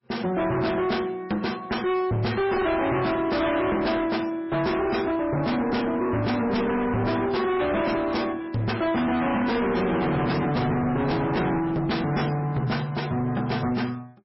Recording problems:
lossy codec; MP3, log-spectral distance 4 dB, nothing above 5.5 kHz
distorted audio; hard clipping, signal-to-distortion ratio 6 dB

